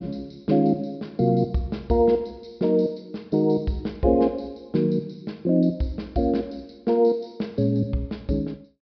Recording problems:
treble missing; nothing above 5.5 kHz

